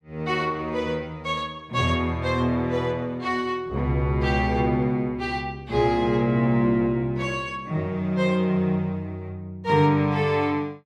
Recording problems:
none

